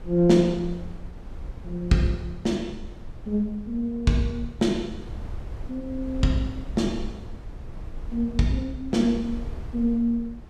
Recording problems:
wind on the microphone; below 86 Hz, SNR 14 dB

